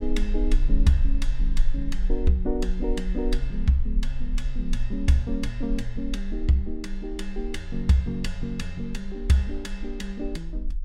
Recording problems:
rumble; below 36 Hz, strongest tone 18 Hz, SNR 4 dB

